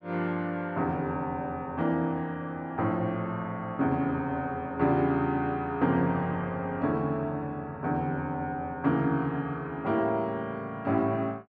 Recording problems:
none

